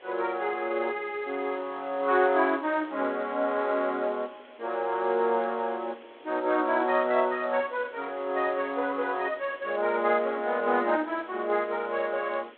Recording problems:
telephone audio; 220 Hz to 3.9 kHz, G.726
hiss; SNR 24 dB

